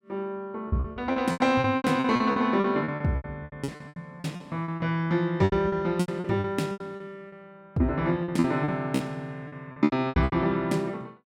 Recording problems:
packet loss; 19% of the sound replaced, filled with repeated pitch periods

